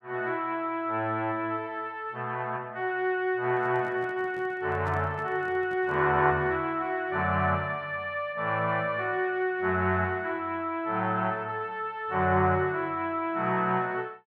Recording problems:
microphone handling noise; from 3.5 to 6 s; peak -10 dB vs average level

